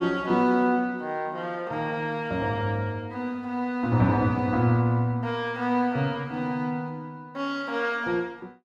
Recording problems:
none

